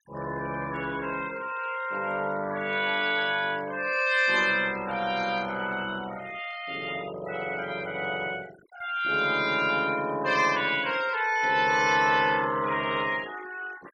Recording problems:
noise reduction artefacts; signal-to-artefact ratio 19 dB

